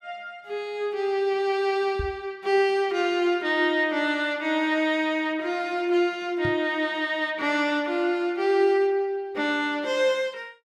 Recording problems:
knock on the microphone; at 2 s and at 6.5 s; peak -4 dB vs average level

